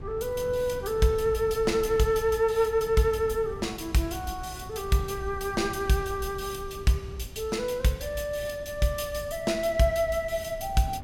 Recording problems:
wind noise; below 160 Hz, SNR 16 dB

